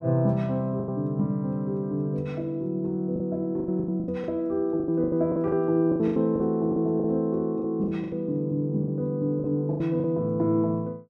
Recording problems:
packet loss; 12% of the sound replaced, filled with the last packet

